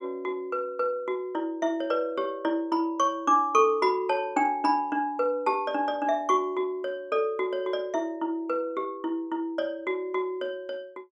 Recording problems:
none

